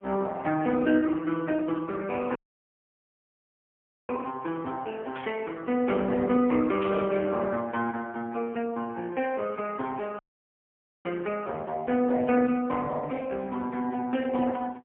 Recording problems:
phone line; 220 Hz to 3.1 kHz, AMR-NB, then MP3
dropout; at 2.5 s for 1.5 s and at 10 s for 1 s
burst of static; at 5 s and at 7 s; peak -8 dB vs average level

